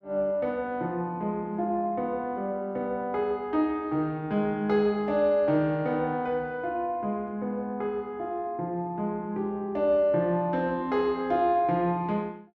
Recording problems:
none

